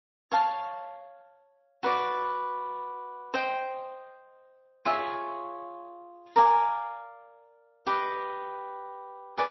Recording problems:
codec artefacts; Speex, then MP3, log-spectral distance 3 dB, nothing above 5.7 kHz

